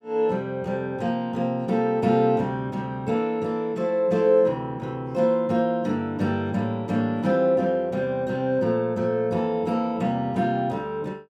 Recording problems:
none

